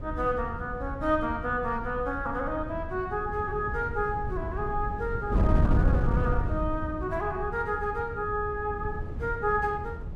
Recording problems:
wind noise; below 140 Hz, SNR 3 dB

